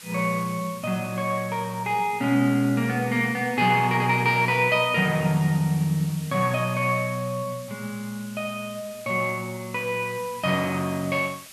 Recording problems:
hiss; slope +2 dB per octave, SNR 18 dB

